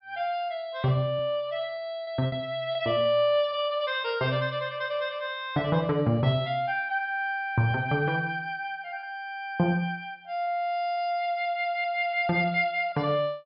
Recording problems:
treble cut off; nothing above 5.5 kHz
lost packets; 3% of the sound replaced, filled with repeated pitch periods

